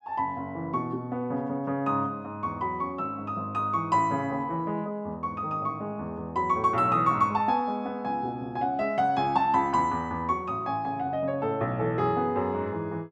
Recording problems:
none

